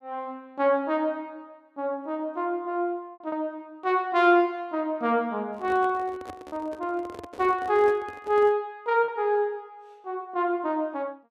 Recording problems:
lost packets; 1.9% of the sound replaced, filled with repeated pitch periods
handling noise; from 5.5 to 8.5 s; peak -8 dB vs average level

